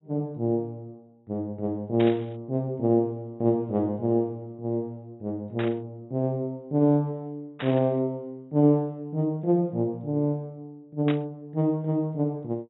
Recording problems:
treble cut off; nothing above 3.8 kHz
burst of static; 4 times, first at 2 s; peak -4 dB vs average level

